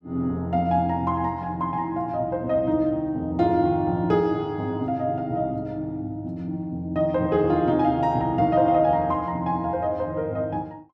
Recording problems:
none

